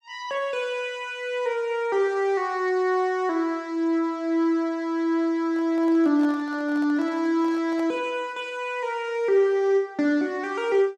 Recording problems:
handling noise; from 5.5 to 8 s; peak -12 dB vs average level

